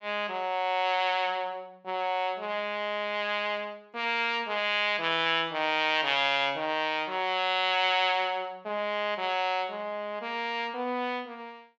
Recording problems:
low-pass filter; nothing above 8 kHz

